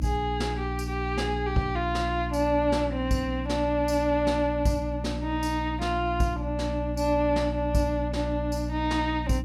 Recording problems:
hum; 60 Hz, harmonics up to 300 Hz, SNR 5 dB

